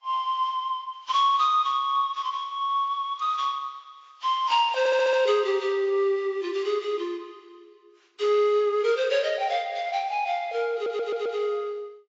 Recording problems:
lossy codec; AAC, log-spectral distance 2 dB, nothing above 7.3 kHz
audio stuttering; at 5 s and at 11 s

